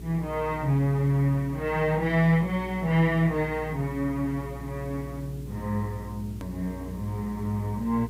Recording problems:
mains hum; 60 Hz, harmonics up to 420 Hz, SNR 13 dB
background hiss; slope -2 dB per octave, SNR 27 dB
click at an edit; at 6.5 s

